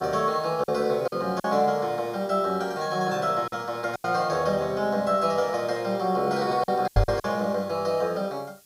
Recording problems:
hiss; SNR 29 dB
lost packets; 5% of the sound replaced, filled with silence
knock on the microphone; at 7 s; peak +7 dB vs average level

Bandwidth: 15.5 kHz